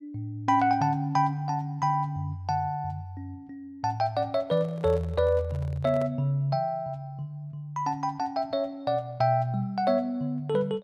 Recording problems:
microphone handling noise; from 4.5 to 6 s; peak -10 dB vs average level

